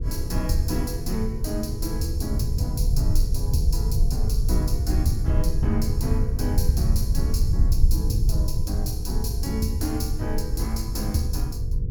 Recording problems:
hum; 50 Hz, harmonics up to 500 Hz, SNR 16 dB
rumble; below 86 Hz, SNR -4 dB
wind on the microphone; below 110 Hz, SNR 13 dB

